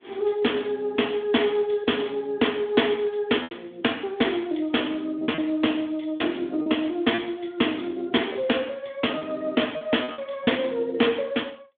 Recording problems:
phone line; 240 Hz to 3.5 kHz, Speex
lost packets; 4% of the sound replaced, filled with repeated pitch periods

